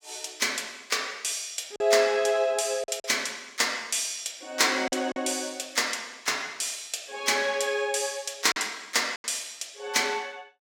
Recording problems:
packet loss; 3% of the sound replaced, filled with silence

